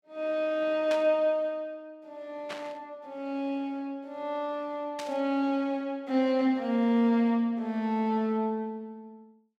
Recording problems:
static burst; at 1 s, at 2.5 s and at 5 s; peak -5 dB vs average level

